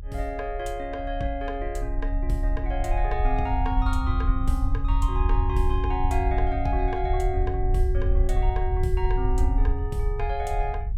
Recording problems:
low-frequency rumble; below 66 Hz, SNR -3 dB

